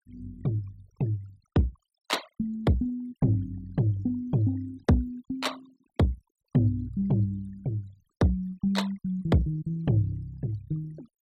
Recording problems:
noise reduction artefacts; signal-to-artefact ratio 21 dB

